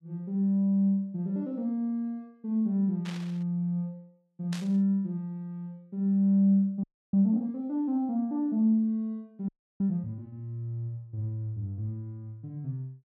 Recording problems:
static burst; at 3 s and at 4.5 s; peak -8 dB vs average level
frozen audio; at 7 s and at 9.5 s

